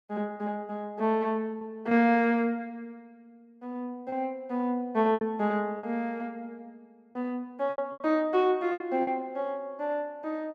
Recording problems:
packet loss; 5% of the sound replaced, filled with repeated pitch periods

